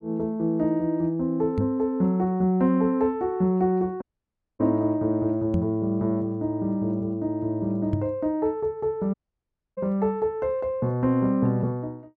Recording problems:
knock on the microphone; at 1.5 s, at 5.5 s and at 8 s; peak +3 dB vs average level
audio cutting out; at 4 s for 0.5 s and at 9 s for 0.5 s

